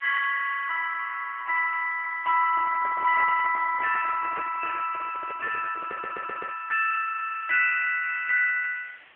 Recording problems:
phone line; 990 Hz to 2.6 kHz, AMR-NB
hiss; SNR 28 dB
microphone handling noise; from 2.5 to 6.5 s; peak -9 dB vs average level
audio stuttering; at 6 s

